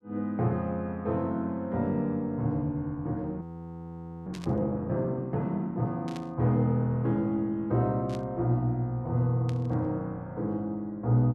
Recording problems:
audio freezing; at 3.5 s for 1 s
static burst; 4 times, first at 4.5 s; peak -11 dB vs average level

